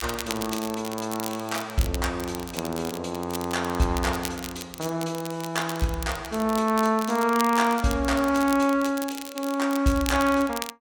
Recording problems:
crackling; vinyl, SNR 12 dB

